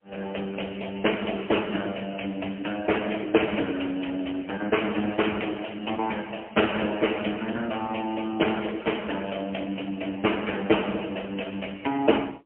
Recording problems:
telephone audio; 220 Hz to 3.1 kHz, AMR-NB, then MP3

